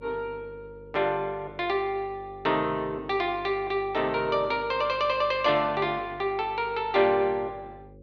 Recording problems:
electrical hum; 50 Hz, harmonics up to 550 Hz, SNR 22 dB

